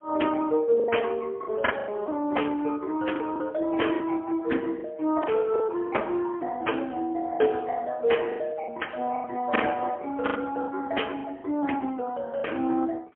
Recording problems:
phone line; 240 Hz to 3.3 kHz, AMR-NB, then MP3
lost packets; 8% of the sound replaced, filled with the last packet

